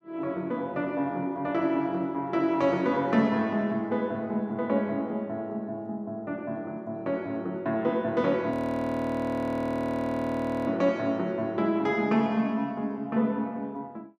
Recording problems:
frozen audio; at 8.5 s for 2 s

